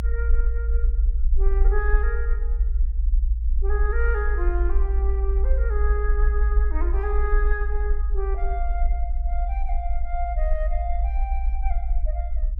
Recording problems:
low-frequency rumble; below 56 Hz, SNR -8 dB

